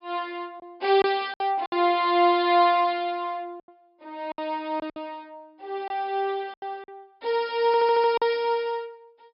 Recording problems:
low-pass filter; nothing above 5.5 kHz
packet loss; 7% of the sound replaced, filled with silence
audio stuttering; at 7.5 s

